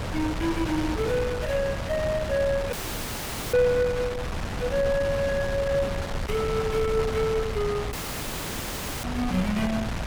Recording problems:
wind noise; below 940 Hz, SNR 5 dB
audio cutting out; at 2.5 s for 1 s and at 8 s for 1 s

